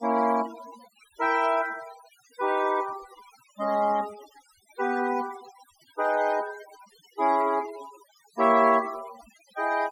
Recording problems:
noise reduction artefacts; signal-to-artefact ratio 18 dB

